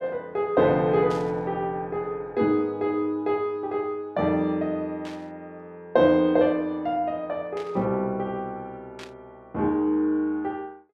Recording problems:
burst of static; 4 times, first at 1 s; peak -12 dB vs average level

